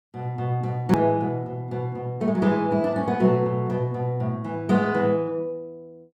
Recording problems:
click at an edit; at 1 s

